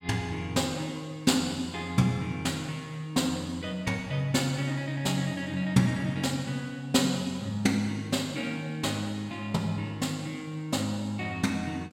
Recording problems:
none

